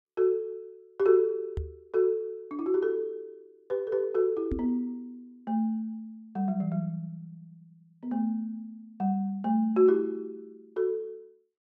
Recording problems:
knock on the microphone; at 1.5 s and at 4.5 s; peak 0 dB vs average level

